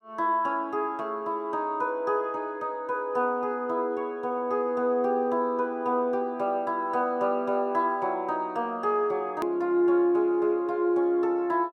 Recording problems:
hard cut with a click; at 9.5 s

